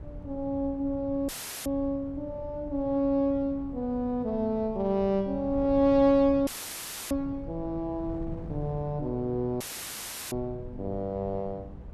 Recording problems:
wind noise; below 160 Hz, SNR 15 dB
dropout; at 1.5 s, at 6.5 s for 0.5 s and at 9.5 s for 0.5 s; filled with static

